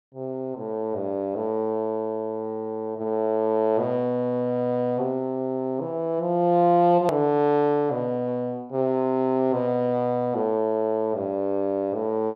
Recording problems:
click at an edit; at 7 s

